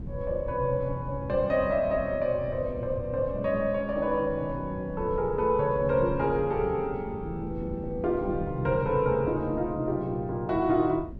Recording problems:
wind on the microphone; below 170 Hz, SNR 13 dB

